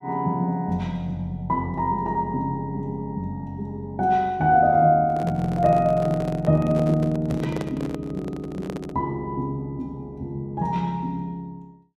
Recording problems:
microphone handling noise; from 5 to 9 s; peak -4 dB vs average level

